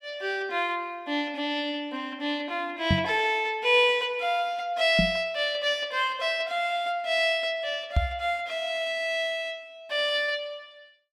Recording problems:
knock on the microphone; at 3 s, at 5 s and at 8 s; peak +6 dB vs average level

